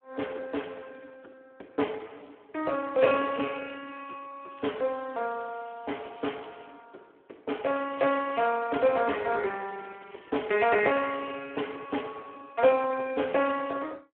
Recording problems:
phone line; 260 Hz to 3.2 kHz, Speex
crackle; from 4.5 to 6.5 s and from 7.5 to 11 s; loose cable, SNR 27 dB

